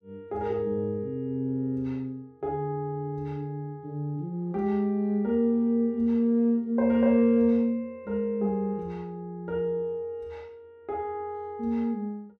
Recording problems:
none

